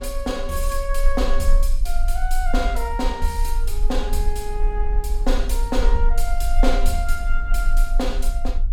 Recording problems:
rumble; below 36 Hz, strongest tone 24 Hz, SNR -2 dB
wind on the microphone; below 450 Hz, SNR 19 dB

